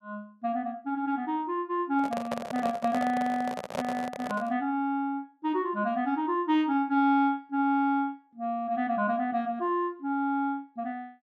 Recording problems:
microphone handling noise; from 2 to 4.5 s; peak +1 dB vs average level

